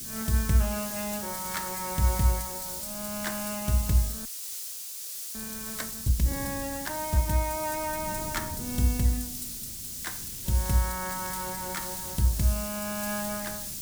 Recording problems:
hiss; SNR 4 dB
wind noise; below 220 Hz, SNR 17 dB
crackling; from 0.5 to 2 s and from 10 to 12 s; loose cable, SNR 20 dB
audio freezing; at 4.5 s for 1 s

